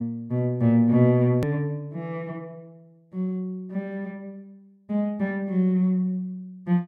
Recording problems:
edit click; at 1.5 s

